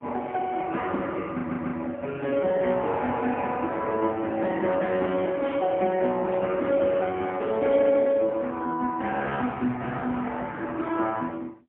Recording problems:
telephone audio; 150 Hz to 3.4 kHz, AMR-NB, then MP3
lost packets; 0.4% of the sound replaced, filled with the last packet
audio stuttering; at 1.5 s
burst of static; at 6.5 s and at 7.5 s; peak -16 dB vs average level

